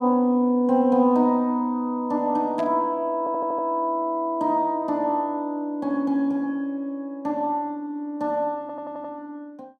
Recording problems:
burst of static; at 2.5 s; peak -13 dB vs average level
stutter; at 3 s and at 8.5 s

